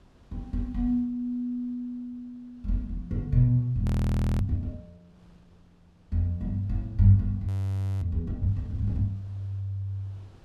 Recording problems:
wind on the microphone; below 330 Hz, SNR 30 dB
audio freezing; at 4 s for 0.5 s and at 7.5 s for 0.5 s

